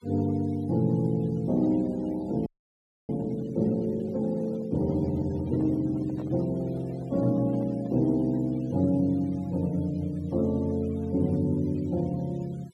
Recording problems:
denoising artefacts; signal-to-artefact ratio 25 dB
audio freezing; at 2.5 s for 0.5 s
handling noise; from 4 to 8 s; peak -12 dB vs average level

